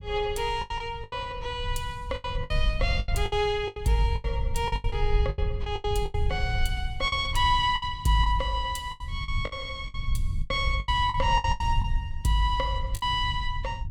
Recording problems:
rumble; below 82 Hz, SNR 5 dB
lost packets; 13% of the sound replaced, filled with the last packet

